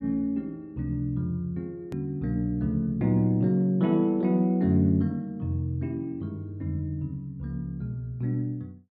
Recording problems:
treble cut off; nothing above 4.8 kHz
edit click; at 2 s

